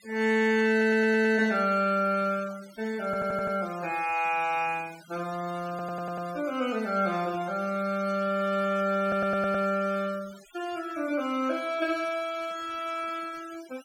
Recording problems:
denoising artefacts; signal-to-artefact ratio 20 dB
audio stuttering; 4 times, first at 0.5 s

